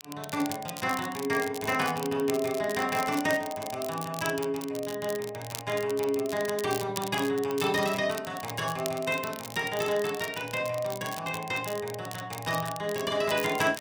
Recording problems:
crackle; vinyl, SNR 11 dB

